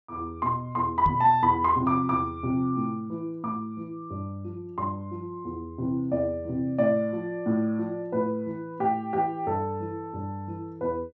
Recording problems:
treble cut off; nothing above 8 kHz
microphone bump; at 1 s; peak +1 dB vs average level

